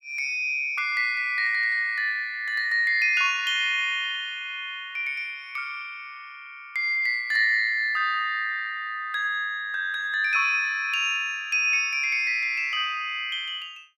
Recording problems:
none

